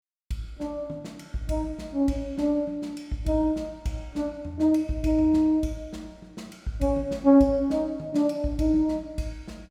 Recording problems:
none

